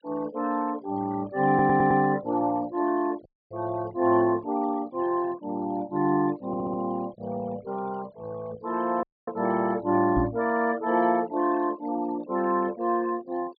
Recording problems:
treble missing; nothing above 4.8 kHz
noise reduction artefacts; signal-to-artefact ratio 22 dB
stutter; at 1.5 s and at 6.5 s
audio cutting out; at 3.5 s and at 9 s
knock on the microphone; at 10 s; peak +3 dB vs average level

